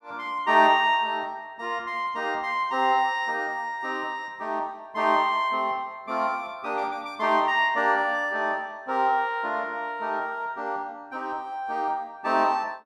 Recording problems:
none

